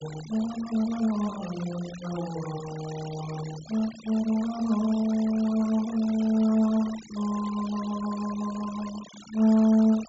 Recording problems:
low-pass filter; nothing above 8 kHz
noise reduction artefacts; signal-to-artefact ratio 17 dB

